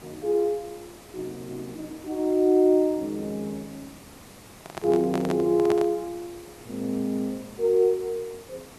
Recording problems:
background hiss; slope -4 dB per octave, SNR 22 dB
microphone handling noise; from 4.5 to 6 s; peak -2 dB vs average level

